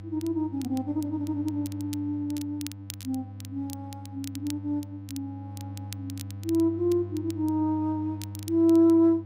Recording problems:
mains hum; 50 Hz, harmonics up to 500 Hz, SNR 12 dB
crackle; vinyl, SNR 19 dB

